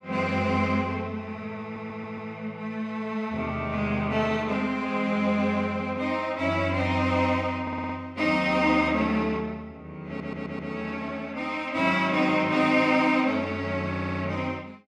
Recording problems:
stutter; 4 times, first at 1.5 s

